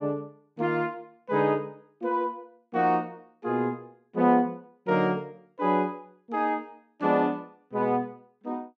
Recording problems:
none

